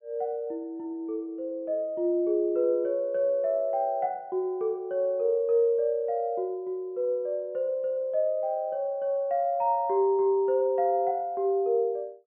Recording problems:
low-pass filter; nothing above 3.3 kHz

